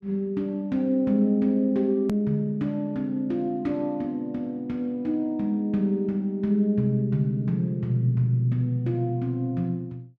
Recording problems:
edit click; at 2 s

